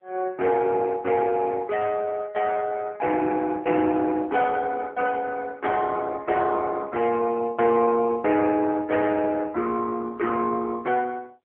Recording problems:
phone line; 280 Hz to 2.1 kHz, AMR-NB

